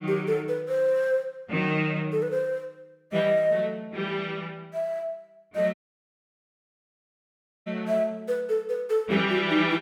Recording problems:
audio cutting out; at 5.5 s for 2 s

